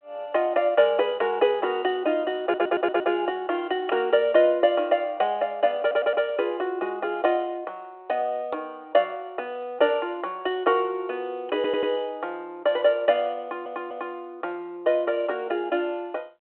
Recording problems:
telephone audio; 300 Hz to 3.3 kHz, G.726
audio stuttering; 4 times, first at 2.5 s

